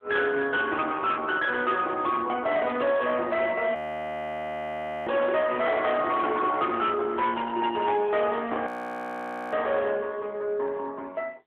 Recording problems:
phone line; 260 Hz to 3.8 kHz, AMR-NB
distortion; hard clipping, signal-to-distortion ratio 11 dB
frozen audio; at 4 s for 1.5 s and at 8.5 s for 1 s

